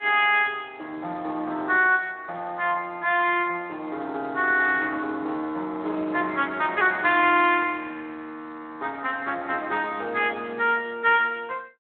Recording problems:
telephone audio; 260 Hz to 3.7 kHz, Speex

